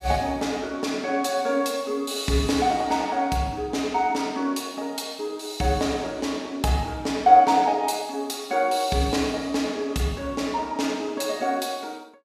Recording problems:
none

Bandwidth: 15 kHz